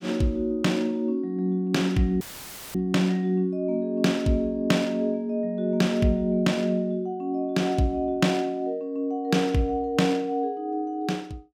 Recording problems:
audio cutting out; at 2 s for 0.5 s; filled with static

